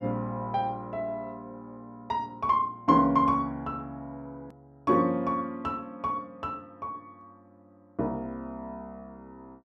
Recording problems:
hard cut with a click; at 4.5 s

